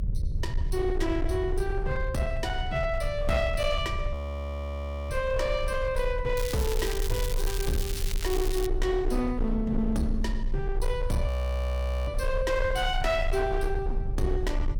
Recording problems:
distortion; hard clipping, signal-to-distortion ratio 12 dB
hum; 60 Hz, harmonics up to 600 Hz, SNR 22 dB
rumble; below 66 Hz, strongest tone 28 Hz, SNR 3 dB
audio freezing; at 4 s for 1 s and at 11 s for 1 s
crackling; from 6.5 to 8.5 s; loose cable, SNR 7 dB

